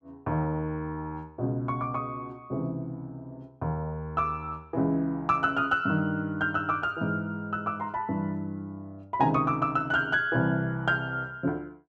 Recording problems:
none

